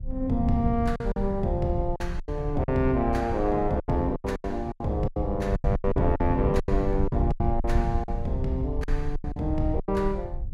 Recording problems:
rumble; below 60 Hz, SNR 7 dB
wind on the microphone; below 150 Hz, SNR 7 dB
packet loss; 14% of the sound replaced, filled with silence

